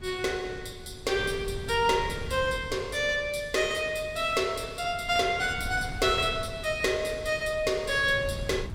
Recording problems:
wind noise; below 150 Hz, SNR 14 dB

